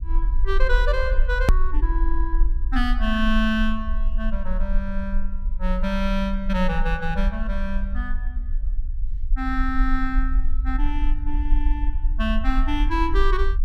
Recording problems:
rumble; below 42 Hz, strongest tone 18 Hz, SNR -1 dB
hard cut with a click; at 1.5 s

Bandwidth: 14.5 kHz